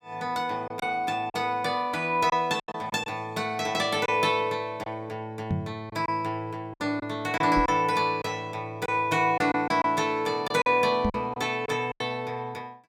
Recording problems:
lost packets; 6% of the sound replaced, filled with silence
knock on the microphone; at 5.5 s, at 7.5 s and at 11 s; peak +2 dB vs average level

